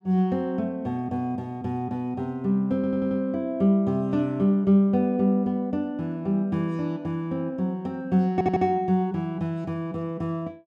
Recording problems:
stutter; at 3 s and at 8.5 s

